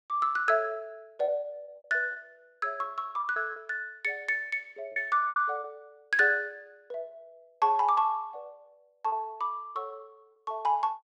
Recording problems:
packet loss; 7% of the sound replaced, filled with repeated pitch periods

